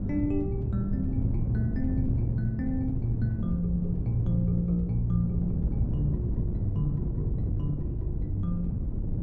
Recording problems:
wind on the microphone; below 160 Hz, SNR 1 dB

